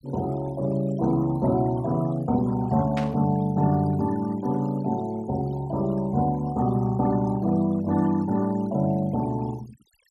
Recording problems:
denoising artefacts; signal-to-artefact ratio 21 dB
static burst; at 3 s; peak -6 dB vs average level

